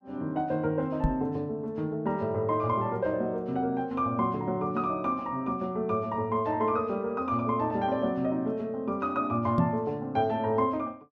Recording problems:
knock on the microphone; at 1 s and at 9.5 s; peak +6 dB vs average level

